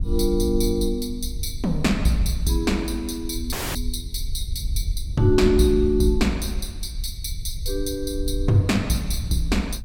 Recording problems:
wind noise; below 64 Hz, SNR 7 dB
dropout; at 3.5 s

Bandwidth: 16.5 kHz